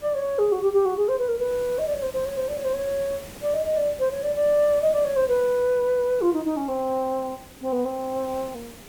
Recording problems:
hiss; slope -4 dB per octave, SNR 18 dB

